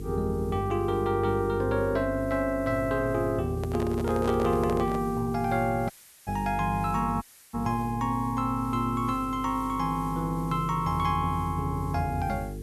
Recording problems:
hum; 50 Hz, harmonics up to 450 Hz, SNR 11 dB
background hiss; slope +1 dB per octave, SNR 24 dB
microphone handling noise; from 3.5 to 5 s; peak -2 dB vs average level
dropout; at 6 s and at 7 s

